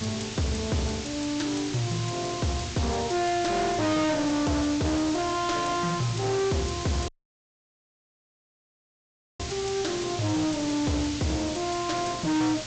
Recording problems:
treble cut off; nothing above 8 kHz
distorted audio; soft clipping, signal-to-distortion ratio 6 dB
mains hum; 60 Hz, harmonics up to 600 Hz, SNR 19 dB
hiss; slope +1 dB per octave, SNR 8 dB
dropout; at 7 s for 2.5 s

